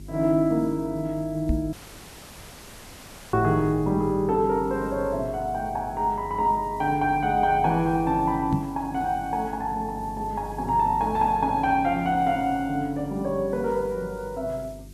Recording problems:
hum; 50 Hz, harmonics up to 400 Hz, SNR 17 dB
background hiss; SNR 28 dB
knock on the microphone; at 1.5 s and at 8.5 s; peak +4 dB vs average level
dropout; at 1.5 s for 1.5 s

